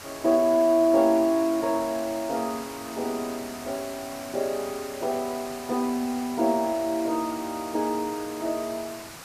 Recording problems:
background hiss; SNR 14 dB

